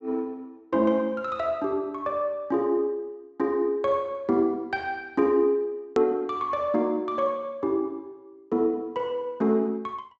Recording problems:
treble missing; nothing above 7.8 kHz
hard cut with a click; at 6 s

